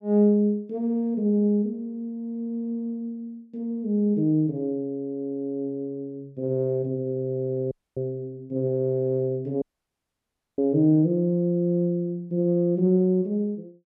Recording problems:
dropout; at 7.5 s and at 9.5 s for 1 s

